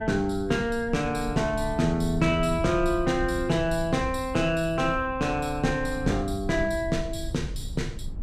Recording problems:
rumble; below 92 Hz, SNR 11 dB

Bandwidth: 15.5 kHz